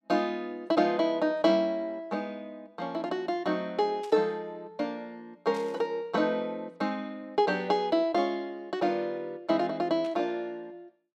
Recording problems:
burst of static; at 4 s, at 5.5 s and at 10 s; peak -15 dB vs average level

